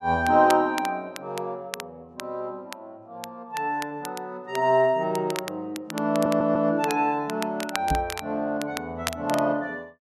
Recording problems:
crackle; vinyl, SNR 13 dB
audio stuttering; at 6 s
microphone thump; at 8 s; peak +1 dB vs average level

